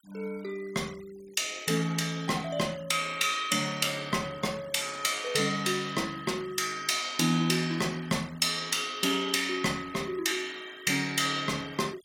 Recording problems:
denoising artefacts; signal-to-artefact ratio 21 dB

